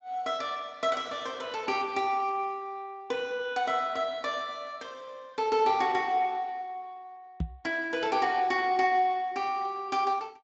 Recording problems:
codec artefacts; Speex, log-spectral distance 3 dB, nothing above 7.3 kHz
knock on the microphone; at 7.5 s; peak +1 dB vs average level

